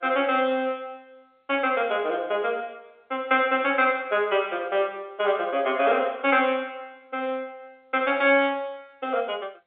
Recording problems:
phone line; 220 Hz to 3.6 kHz, G.711

